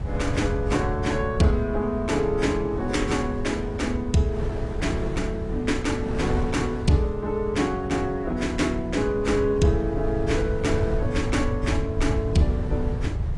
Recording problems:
lossy compression; AAC, log-spectral distance 2 dB, nothing above 10.1 kHz
rumble; below 100 Hz, SNR 7 dB
wind noise; below 410 Hz, SNR 10 dB

